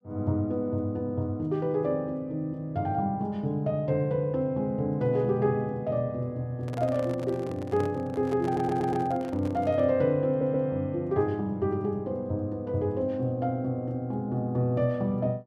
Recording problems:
microphone handling noise; from 6.5 to 10 s; peak -8 dB vs average level
stutter; at 8.5 s and at 10 s

